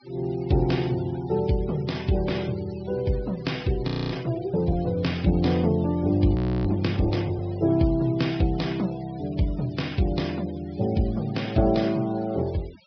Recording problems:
low-pass filter; nothing above 5.5 kHz
noise reduction artefacts; signal-to-artefact ratio 21 dB
frozen audio; at 4 s and at 6.5 s

